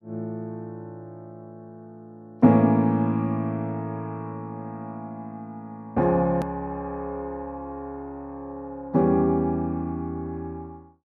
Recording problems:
hard cut with a click; at 6.5 s

